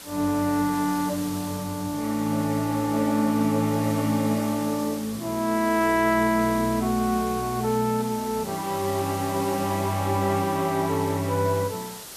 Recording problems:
background hiss; slope -1 dB per octave, SNR 14 dB

